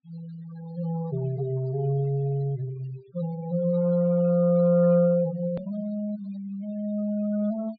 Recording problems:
treble cut off; nothing above 4.7 kHz
noise reduction artefacts; signal-to-artefact ratio 23 dB
hard cut with a click; at 5.5 s

